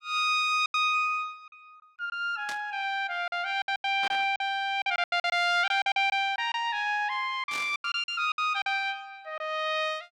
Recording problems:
lost packets; 11% of the sound replaced, filled with silence
burst of static; at 2.5 s, at 4 s and at 7.5 s; peak -6 dB vs average level

